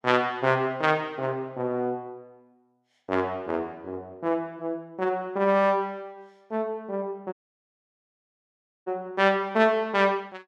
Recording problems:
audio cutting out; at 7.5 s for 1.5 s

